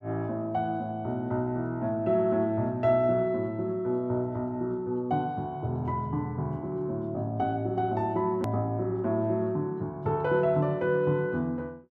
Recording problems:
hard cut with a click; at 8.5 s

